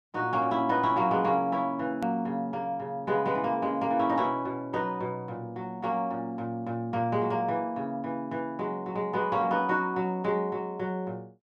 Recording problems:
hard cut with a click; at 2 s

